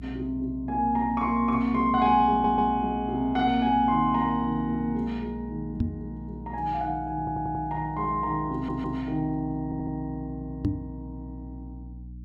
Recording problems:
hum; 60 Hz, harmonics up to 300 Hz, SNR 15 dB
audio stuttering; 4 times, first at 2.5 s
microphone thump; at 6 s and at 11 s; peak +5 dB vs average level

